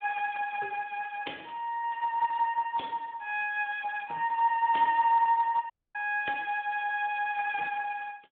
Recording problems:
phone line; 300 Hz to 3.2 kHz, Speex
dropout; at 5.5 s

